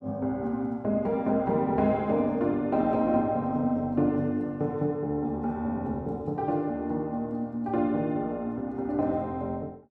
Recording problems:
none

